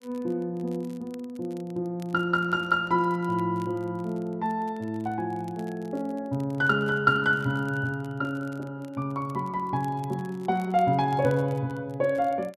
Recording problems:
crackling; vinyl, SNR 29 dB

